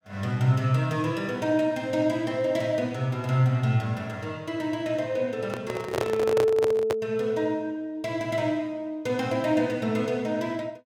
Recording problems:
handling noise; from 5.5 to 7 s; peak +3 dB vs average level

